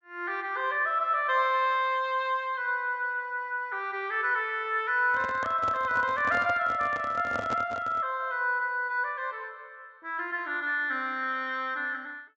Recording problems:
treble cut off; nothing above 8 kHz
microphone handling noise; from 5 to 8 s; peak -4 dB vs average level

